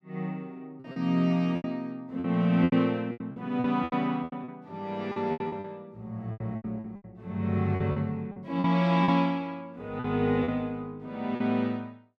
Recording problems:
lost packets; 12% of the sound replaced, filled with repeated pitch periods

